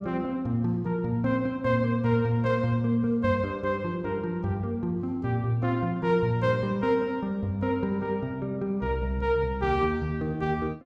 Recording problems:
none

